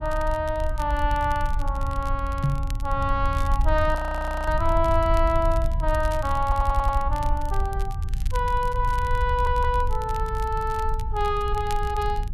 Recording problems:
rumble; below 70 Hz, SNR 3 dB
crackling; vinyl, SNR 20 dB
microphone bump; at 2.5 s; peak +6 dB vs average level
audio freezing; at 4 s for 0.5 s
stutter; at 6.5 s and at 9.5 s

